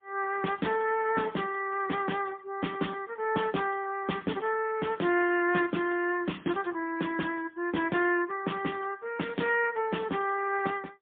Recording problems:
phone line; 190 Hz to 3.4 kHz, AMR-NB, then MP3

